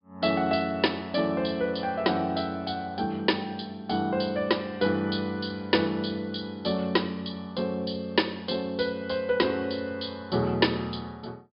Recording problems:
low-pass filter; nothing above 5.5 kHz

